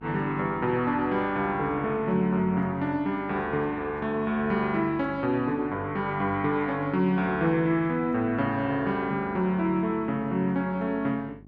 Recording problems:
electrical hum; 50 Hz, harmonics up to 800 Hz, SNR 22 dB

